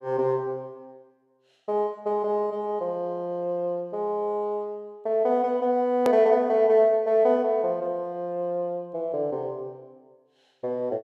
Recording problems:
edit click; at 6 s

